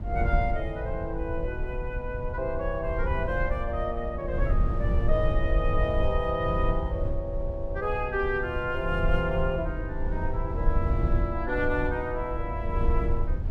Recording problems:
low-frequency rumble; below 82 Hz, SNR 1 dB

